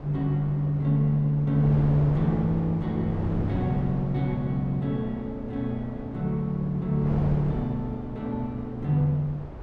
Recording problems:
wind noise; below 420 Hz, SNR 10 dB

